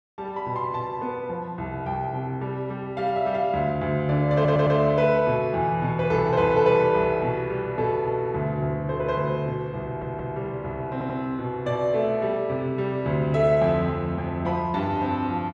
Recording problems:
stutter; at 4.5 s, at 10 s and at 11 s

